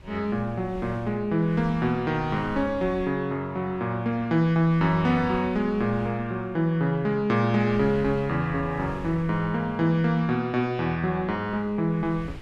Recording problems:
wind on the microphone; below 140 Hz, SNR 20 dB

